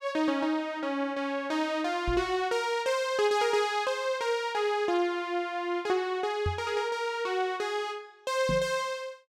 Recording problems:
microphone thump; at 2 s, at 6.5 s and at 8.5 s; peak +1 dB vs average level

